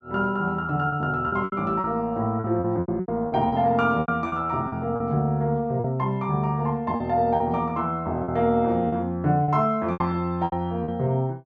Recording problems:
lost packets; 10% of the sound replaced, filled with repeated pitch periods

